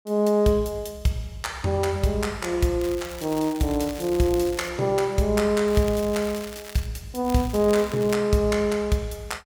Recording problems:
crackle; from 3 to 4.5 s, from 5.5 to 7 s and at 7.5 s; loose cable, SNR 17 dB

